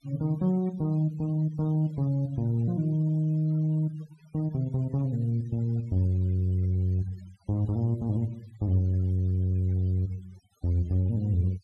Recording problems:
noise reduction artefacts; signal-to-artefact ratio 27 dB

